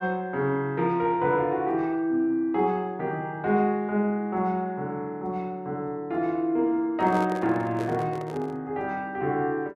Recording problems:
handling noise; from 7 to 8.5 s; peak -4 dB vs average level

